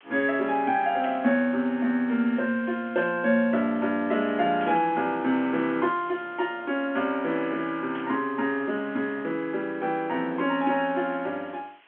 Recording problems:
telephone audio; 190 Hz to 3.3 kHz, G.711
hiss; SNR 27 dB
static burst; 4 times, first at 1 s; peak -11 dB vs average level

